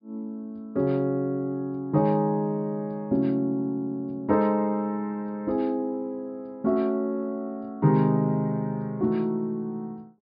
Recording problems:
treble cut off; nothing above 5.5 kHz

